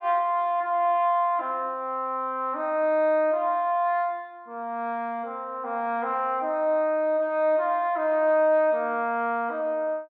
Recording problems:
none

